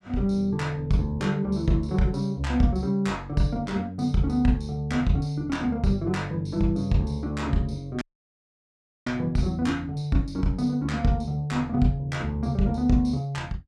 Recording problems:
dropout; at 8 s for 1 s

